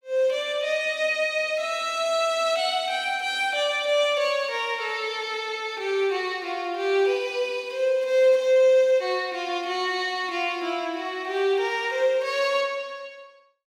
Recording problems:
none

